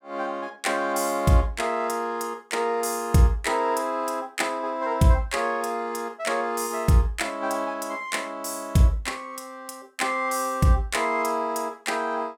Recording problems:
none

